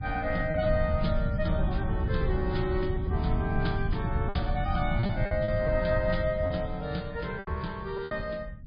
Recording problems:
lossy compression; MP3, log-spectral distance 2 dB
low-frequency rumble; below 130 Hz, SNR 1 dB
lost packets; 5% of the sound replaced, filled with repeated pitch periods

